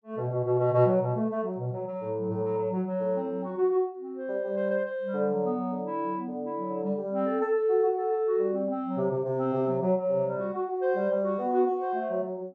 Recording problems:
none

